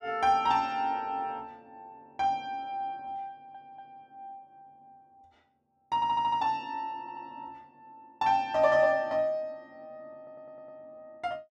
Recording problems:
stutter; 4 times, first at 3.5 s

